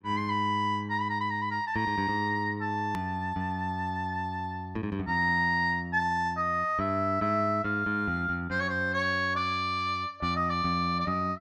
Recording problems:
click at an edit; at 3 s

